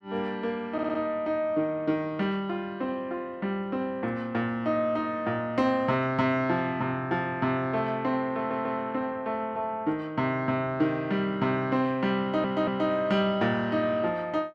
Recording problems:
audio stuttering; at 0.5 s, at 8.5 s and at 12 s

